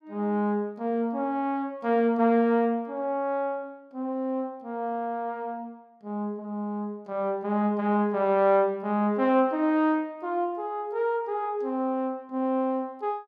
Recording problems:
none

